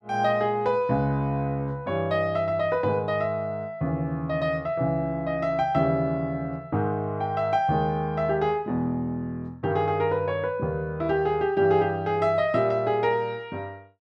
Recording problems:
none

